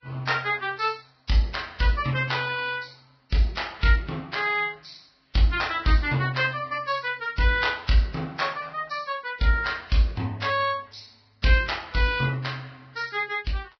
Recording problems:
lossy compression; Vorbis, log-spectral distance 5 dB, nothing above 5.3 kHz

